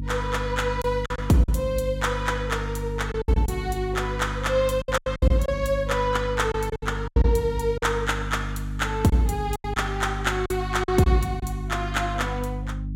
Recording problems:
electrical hum; 50 Hz, harmonics up to 300 Hz, SNR 7 dB
packet loss; 8% of the sound replaced, filled with silence

